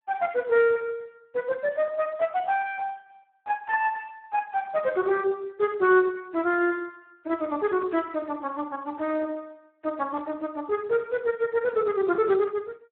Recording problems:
phone line; 300 Hz to 2.9 kHz, Speex
static burst; at 4 s; peak -21 dB vs average level

